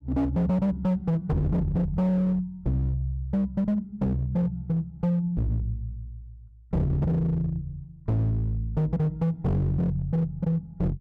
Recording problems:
distorted audio; hard clipping, signal-to-distortion ratio 8 dB

